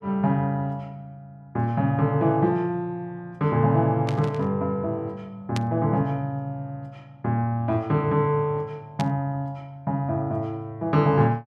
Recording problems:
static burst; at 4 s, at 5.5 s and at 9 s; peak -4 dB vs average level

